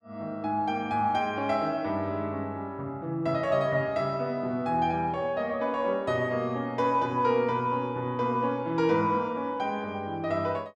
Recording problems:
none

